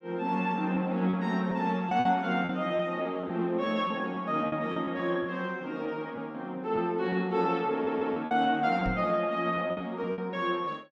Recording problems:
packet loss; 7% of the sound replaced, filled with repeated pitch periods
stutter; at 7.5 s
knock on the microphone; at 9 s; peak -2 dB vs average level

